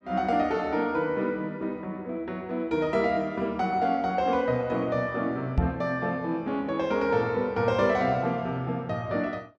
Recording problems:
microphone thump; at 5.5 s; peak +6 dB vs average level

